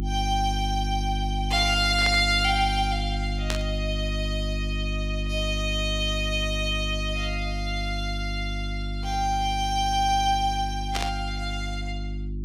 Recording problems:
hum; 50 Hz, harmonics up to 350 Hz, SNR 4 dB
static burst; at 2 s, at 3.5 s and at 11 s; peak +2 dB vs average level

